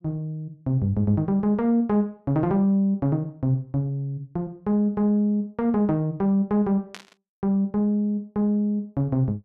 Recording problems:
burst of static; at 7 s; peak -9 dB vs average level

